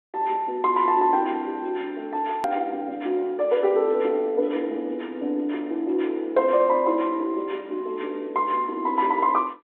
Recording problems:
phone line; 260 Hz to 3.6 kHz, G.726
hard cut with a click; at 2.5 s

